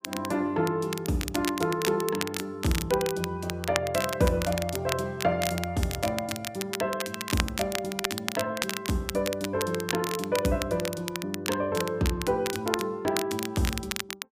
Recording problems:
crackling; vinyl, SNR 5 dB

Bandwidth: 15 kHz